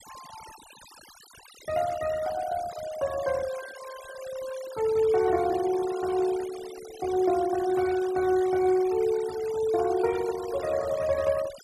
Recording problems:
denoising artefacts; signal-to-artefact ratio 18 dB

